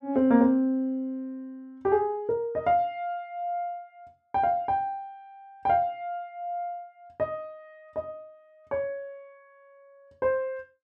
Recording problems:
none

